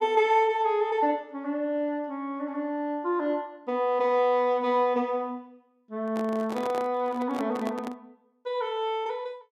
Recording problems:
handling noise; from 6 to 8 s; peak -5 dB vs average level

